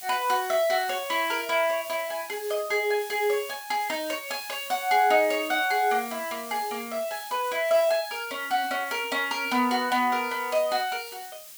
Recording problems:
hiss; slope +3 dB per octave, SNR 14 dB

